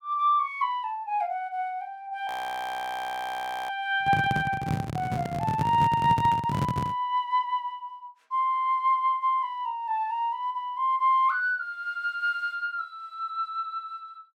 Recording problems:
frozen audio; at 2.5 s for 1.5 s
handling noise; from 4 to 7 s; peak +3 dB vs average level

